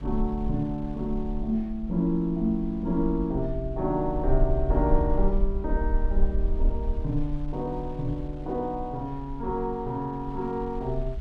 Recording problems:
low-frequency rumble; below 46 Hz, strongest tone 22 Hz, SNR 4 dB
wind noise; below 440 Hz, SNR 22 dB

